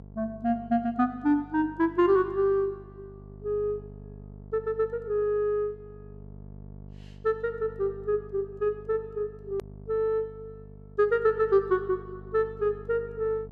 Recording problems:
hum; 50 Hz, harmonics up to 700 Hz, SNR 19 dB
click at an edit; at 9.5 s

